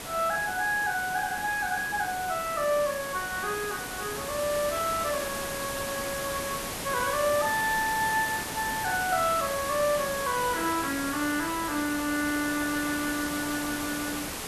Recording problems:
hiss; slope -3 dB per octave, SNR 5 dB

